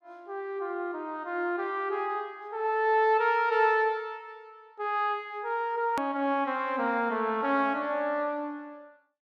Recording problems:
edit click; at 6 s

